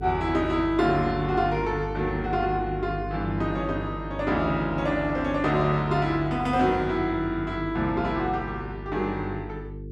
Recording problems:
mains hum; 50 Hz, harmonics up to 450 Hz, SNR 10 dB

